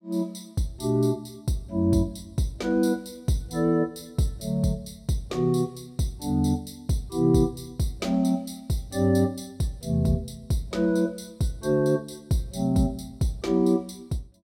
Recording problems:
none

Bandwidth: 16 kHz